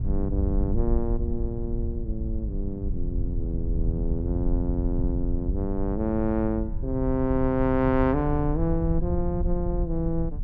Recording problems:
rumble; below 74 Hz, SNR 2 dB

